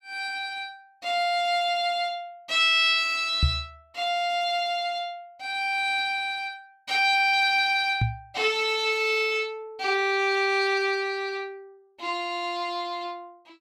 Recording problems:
microphone thump; at 3.5 s and at 8 s; peak +5 dB vs average level

